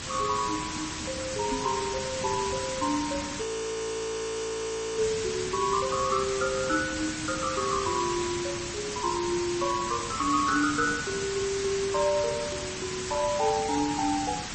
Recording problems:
codec artefacts; MP3, then Vorbis, log-spectral distance 16 dB, nothing above 8.2 kHz
background hiss; SNR 4 dB
microphone thump; at 1.5 s; peak 0 dB vs average level
frozen audio; at 3.5 s for 1.5 s

